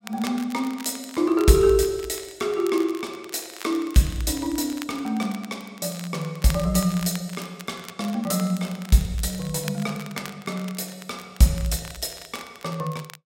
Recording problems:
crackling; vinyl, SNR 17 dB

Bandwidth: 16 kHz